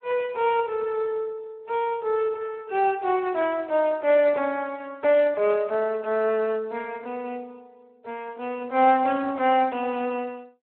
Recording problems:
telephone audio; 300 Hz to 3.2 kHz, Speex

